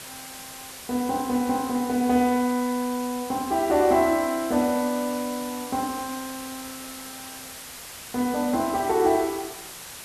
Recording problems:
hiss; slope 0 dB per octave, SNR 13 dB

